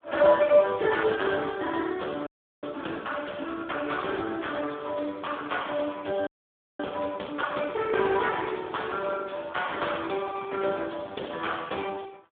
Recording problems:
phone line; 220 Hz to 3.6 kHz, Speex
audio freezing; at 2.5 s and at 6.5 s for 0.5 s

